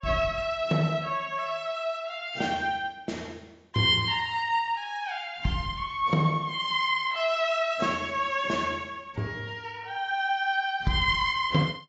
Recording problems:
codec artefacts; AAC, log-spectral distance 2 dB, nothing above 7.3 kHz

